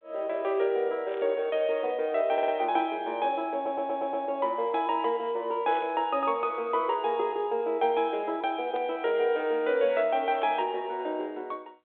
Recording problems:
phone line; 320 Hz to 3.8 kHz, G.726
static burst; 4 times, first at 1 s; peak -14 dB vs average level
audio stuttering; at 2.5 s and at 3.5 s

